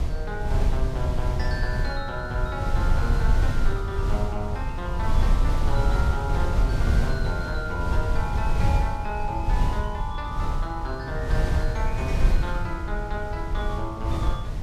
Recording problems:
electrical hum; 50 Hz, harmonics up to 500 Hz, SNR 12 dB
wind noise; below 84 Hz, SNR -5 dB

